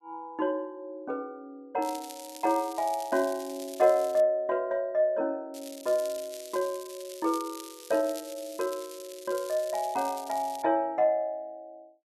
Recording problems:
crackle; from 2 to 4 s and from 5.5 to 11 s; loose cable, SNR 16 dB

